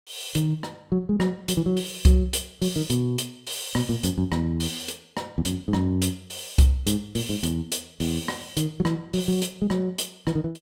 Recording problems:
none

